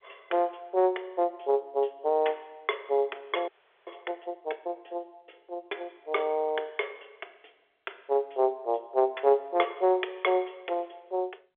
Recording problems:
telephone audio; 340 Hz to 3.9 kHz, G.711
audio freezing; at 3.5 s

